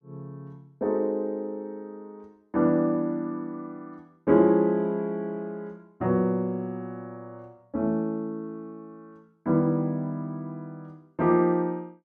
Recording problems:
none

